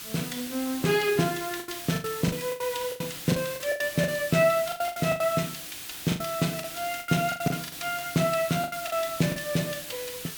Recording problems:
background hiss; SNR 9 dB
lost packets; 13% of the sound replaced, filled with the last packet

